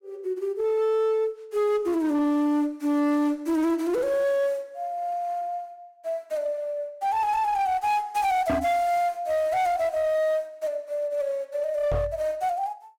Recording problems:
distorted audio; hard clipping, uneven, signal-to-distortion ratio 11 dB
microphone bump; at 8.5 s and at 12 s; peak +3 dB vs average level

